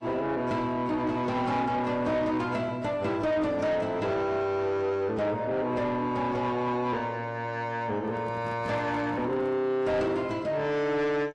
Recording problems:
lossy codec; AAC, log-spectral distance 2 dB, nothing above 11.3 kHz
distorted audio; soft clipping, signal-to-distortion ratio 11 dB
microphone handling noise; from 8 to 9.5 s; peak -8 dB vs average level

